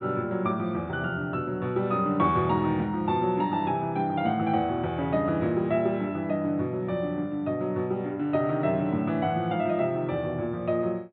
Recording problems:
low-pass filter; nothing above 4 kHz

